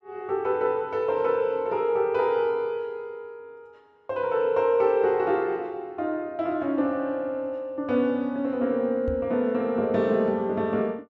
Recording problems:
microphone thump; at 9 s; peak -3 dB vs average level

